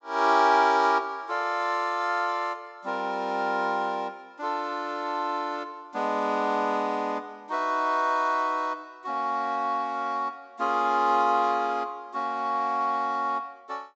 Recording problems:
low-pass filter; nothing above 8 kHz

